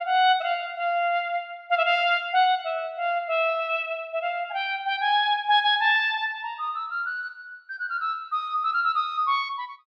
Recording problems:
none

